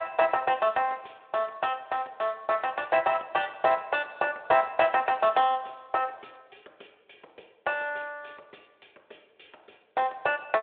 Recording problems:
phone line; 320 Hz to 3.5 kHz, Speex

